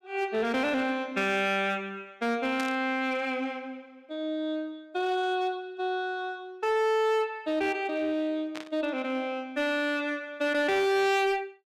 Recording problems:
distortion; hard clipping, signal-to-distortion ratio 11 dB
burst of static; at 2.5 s and at 8.5 s; peak -5 dB vs average level

